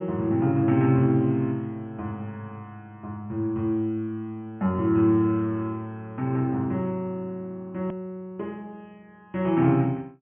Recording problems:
treble cut off; nothing above 3.3 kHz
click at an edit; at 8 s

